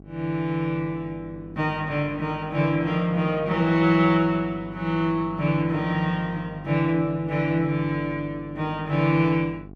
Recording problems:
hum; 50 Hz, harmonics up to 800 Hz, SNR 18 dB

